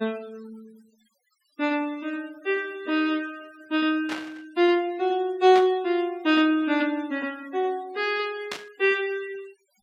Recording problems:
noise reduction artefacts; signal-to-artefact ratio 25 dB
static burst; at 4 s, at 5.5 s and at 8.5 s; peak -3 dB vs average level

